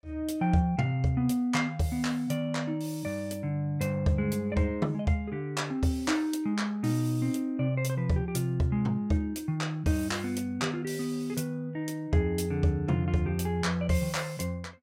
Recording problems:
none

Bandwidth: 16.5 kHz